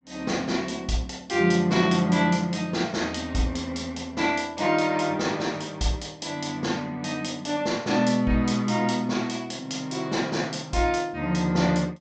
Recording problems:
treble missing; nothing above 8 kHz

